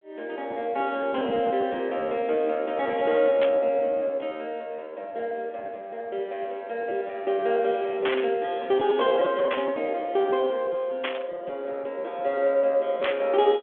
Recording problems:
phone line; 280 Hz to 3.5 kHz, G.726
packet loss; 15% of the sound replaced, filled with repeated pitch periods
static burst; 5 times, first at 3.5 s; peak +1 dB vs average level

